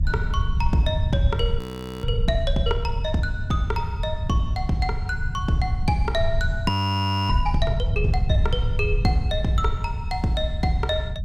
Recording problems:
rumble; below 96 Hz, SNR 2 dB
frozen audio; at 1.5 s and at 6.5 s for 0.5 s

